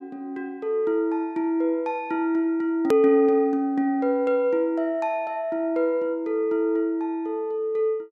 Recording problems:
click at an edit; at 3 s

